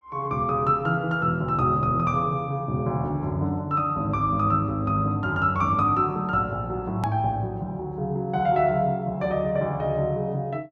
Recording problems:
edit click; at 7 s

